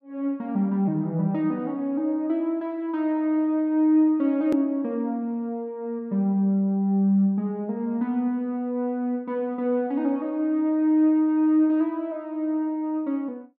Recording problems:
hard cut with a click; at 4.5 s

